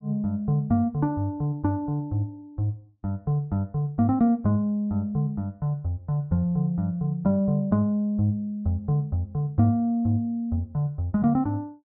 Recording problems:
treble missing; nothing above 5.9 kHz

